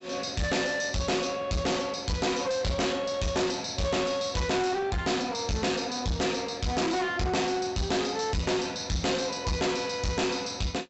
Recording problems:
treble missing; nothing above 7.8 kHz
distorted audio; soft clipping, signal-to-distortion ratio 6 dB

